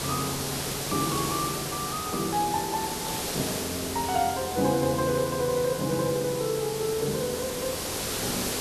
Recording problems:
background hiss; SNR 2 dB

